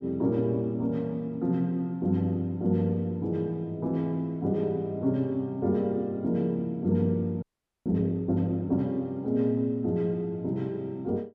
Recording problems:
audio freezing; at 7.5 s

